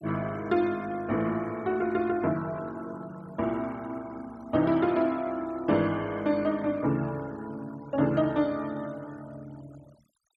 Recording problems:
denoising artefacts; signal-to-artefact ratio 23 dB

